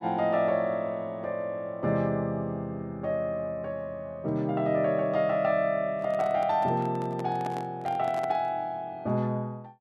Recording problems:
microphone handling noise; from 6 to 8.5 s; peak -6 dB vs average level

